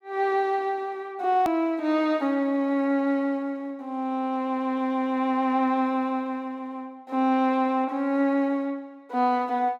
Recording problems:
click at an edit; at 1.5 s

